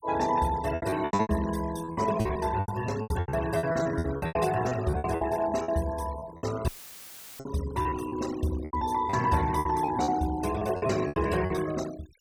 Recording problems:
noise reduction artefacts; signal-to-artefact ratio 15 dB
packet loss; 16% of the sound replaced, filled with repeated pitch periods
dropout; at 6.5 s for 0.5 s; filled with static

